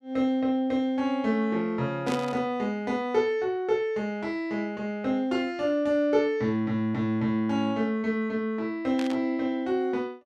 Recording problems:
burst of static; at 2 s and at 9 s; peak -5 dB vs average level

